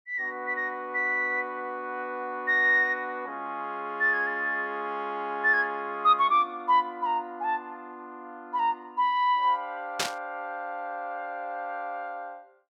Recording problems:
burst of static; at 10 s; peak +4 dB vs average level

